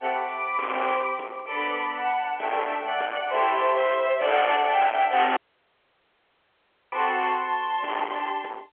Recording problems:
telephone audio; 320 Hz to 3.5 kHz, G.711
distortion; hard clipping, uneven, signal-to-distortion ratio 9 dB
audio cutting out; at 5.5 s for 1.5 s

